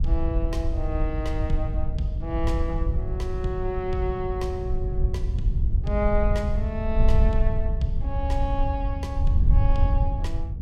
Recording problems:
electrical hum; 50 Hz, harmonics up to 450 Hz, SNR 11 dB
wind noise; below 72 Hz, SNR -4 dB

